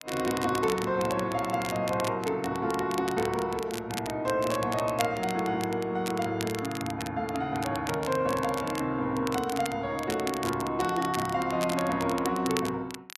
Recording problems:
crackling; vinyl, SNR 11 dB

